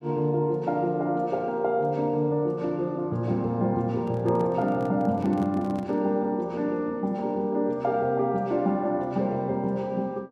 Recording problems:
microphone handling noise; from 4 to 6 s; peak -9 dB vs average level

